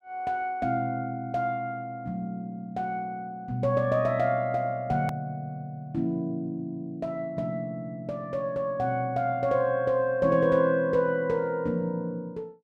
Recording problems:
hard cut with a click; at 5 s

